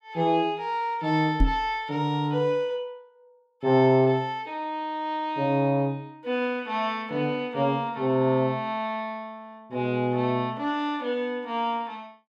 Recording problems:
microphone bump; at 1.5 s; peak +6 dB vs average level

